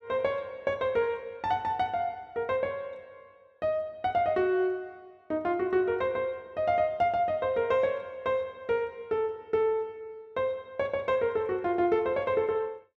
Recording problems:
none

